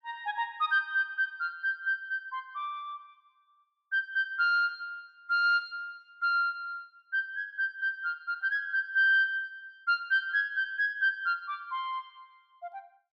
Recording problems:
none

